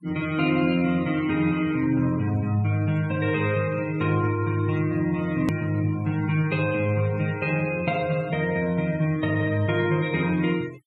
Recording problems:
noise reduction artefacts; signal-to-artefact ratio 21 dB
hard cut with a click; at 5.5 s

